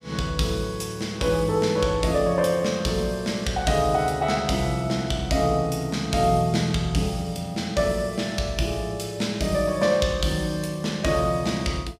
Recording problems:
none

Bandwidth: 15.5 kHz